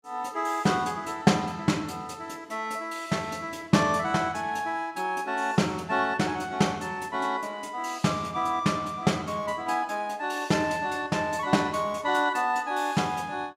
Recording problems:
none

